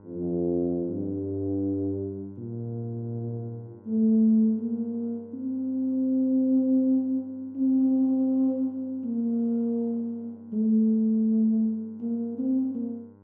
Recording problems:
electrical hum; 50 Hz, harmonics up to 1.4 kHz, SNR 28 dB

